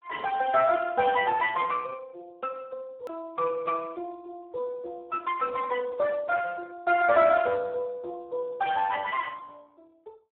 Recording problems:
phone line; 370 Hz to 2.3 kHz, Speex
click at an edit; at 3 s

